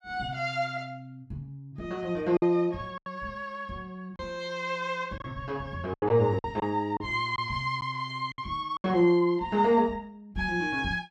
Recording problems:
packet loss; 5% of the sound replaced, filled with silence

